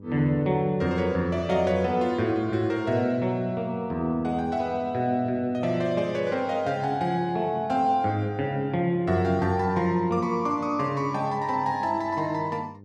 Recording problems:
electrical hum; 50 Hz, harmonics up to 600 Hz, SNR 21 dB

